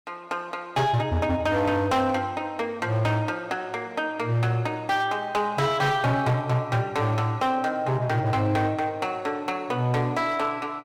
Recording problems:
distortion; hard clipping, signal-to-distortion ratio 11 dB

